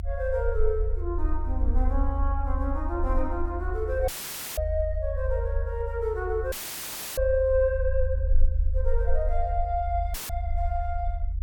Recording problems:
rumble; below 74 Hz, SNR 0 dB
dropout; at 4 s, at 6.5 s for 0.5 s and at 10 s; filled with static

